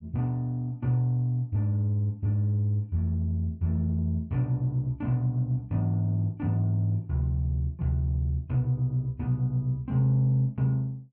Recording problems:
none

